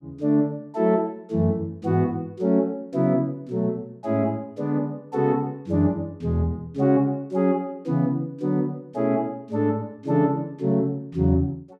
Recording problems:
none

